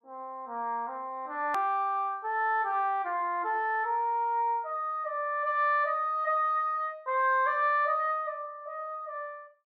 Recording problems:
hard cut with a click; at 1.5 s

